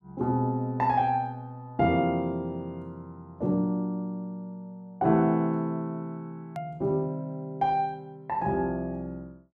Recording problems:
hard cut with a click; at 6.5 s

